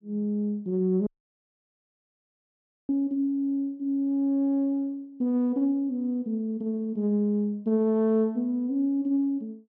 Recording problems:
audio cutting out; at 1 s for 2 s

